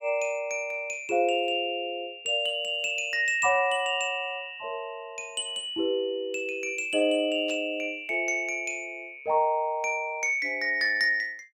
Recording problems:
burst of static; at 7.5 s; peak -14 dB vs average level

